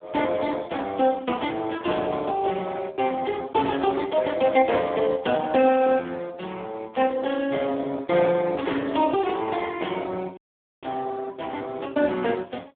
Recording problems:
phone line; 260 Hz to 3.5 kHz, Speex
burst of static; 4 times, first at 1.5 s; peak -16 dB vs average level
audio cutting out; at 10 s

